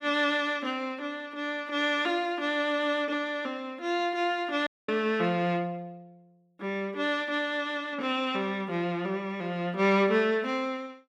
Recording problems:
dropout; at 4.5 s

